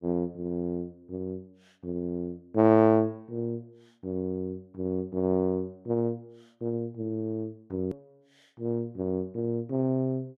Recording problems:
click at an edit; at 8 s

